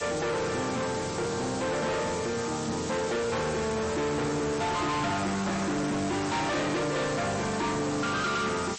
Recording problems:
codec artefacts; MP3, log-spectral distance 16 dB, nothing above 8.2 kHz
distorted audio; hard clipping, signal-to-distortion ratio 5 dB
hiss; SNR 10 dB

